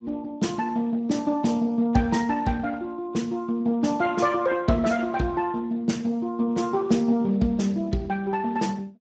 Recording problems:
lossy compression; Speex, log-spectral distance 3 dB, nothing above 7.6 kHz

